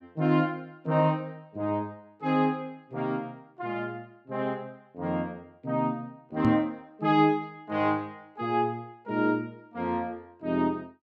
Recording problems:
microphone bump; at 6.5 s; peak +6 dB vs average level

